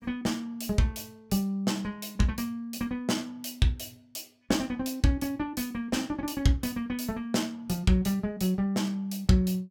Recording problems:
none

